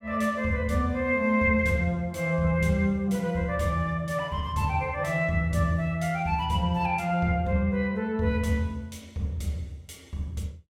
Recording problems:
none

